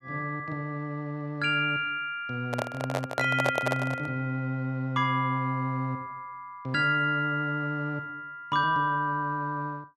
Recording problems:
handling noise; from 2.5 to 4 s; peak +4 dB vs average level

